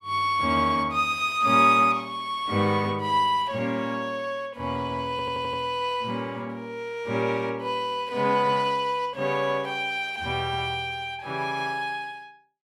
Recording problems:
audio stuttering; at 5 s

